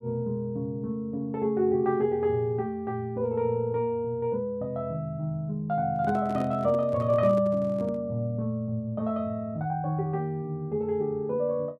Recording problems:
microphone handling noise; from 6 to 8 s; peak -6 dB vs average level

